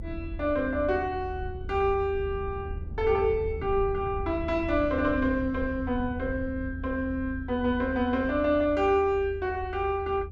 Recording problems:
rumble; below 80 Hz, SNR 10 dB

